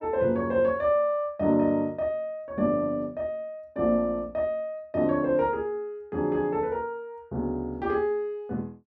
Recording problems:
none

